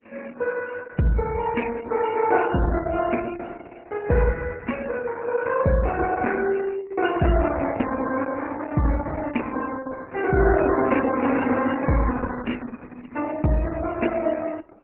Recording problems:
codec artefacts; MP3, then Opus, log-spectral distance 7 dB

